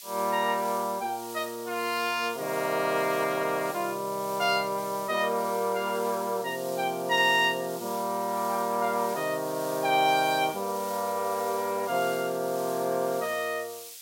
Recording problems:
hiss; SNR 14 dB

